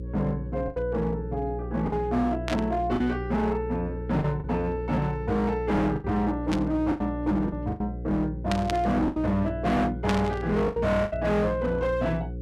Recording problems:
distortion; hard clipping, uneven, signal-to-distortion ratio 7 dB
electrical hum; 60 Hz, harmonics up to 540 Hz, SNR 8 dB
lost packets; 6% of the sound replaced, filled with the last packet
static burst; 4 times, first at 2.5 s; peak 0 dB vs average level

